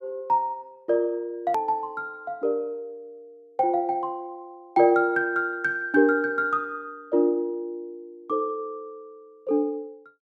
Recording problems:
hard cut with a click; at 1.5 s

